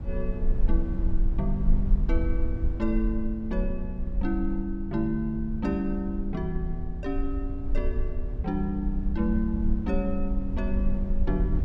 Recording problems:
low-frequency rumble; below 50 Hz, strongest tone 20 Hz, SNR 0 dB

